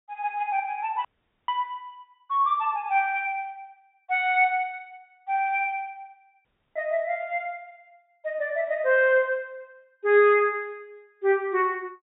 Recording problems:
treble missing; nothing above 4 kHz
dropout; at 1 s and at 6.5 s

